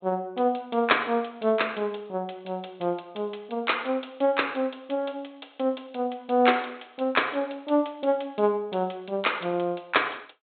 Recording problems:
treble cut off; nothing above 4 kHz

